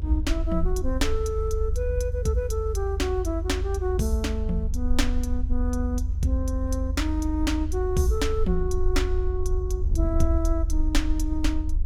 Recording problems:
rumble; below 76 Hz, SNR 0 dB
wind noise; below 110 Hz, SNR 12 dB

